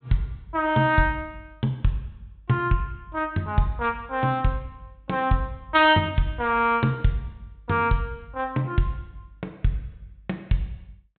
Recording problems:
treble cut off; nothing above 4 kHz

